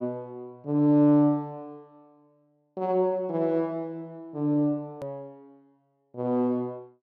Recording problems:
edit click; at 5 s

